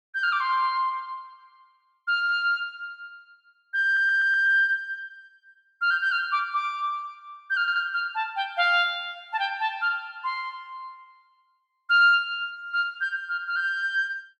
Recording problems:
audio stuttering; at 4 s and at 7.5 s

